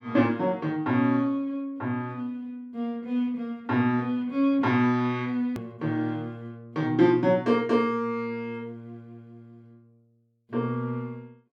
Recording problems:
click at an edit; at 5.5 s

